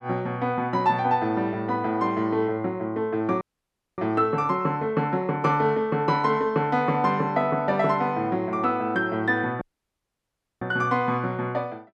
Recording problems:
audio cutting out; at 3.5 s for 0.5 s and at 9.5 s for 1 s

